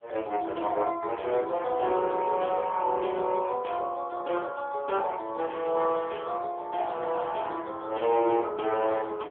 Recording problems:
telephone audio; 300 Hz to 3.4 kHz, AMR-NB

